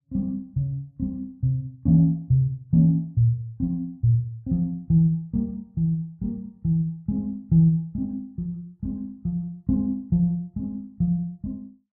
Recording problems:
none

